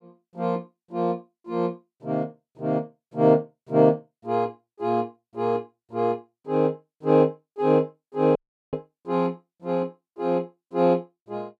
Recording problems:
audio cutting out; at 8.5 s

